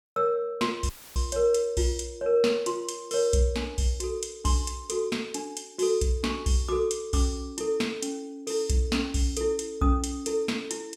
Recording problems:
audio cutting out; at 1 s; filled with static

